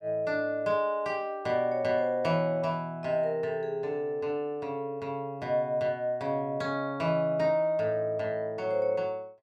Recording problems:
none

